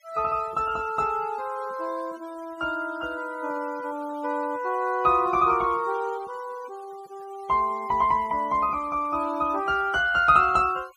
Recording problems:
noise reduction artefacts; signal-to-artefact ratio 24 dB

